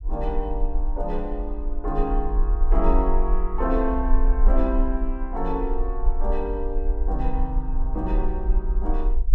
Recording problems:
low-frequency rumble; below 44 Hz, strongest tone 24 Hz, SNR -2 dB

